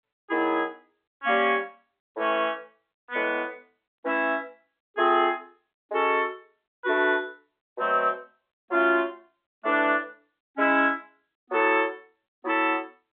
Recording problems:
phone line; 280 Hz to 3.6 kHz, G.711

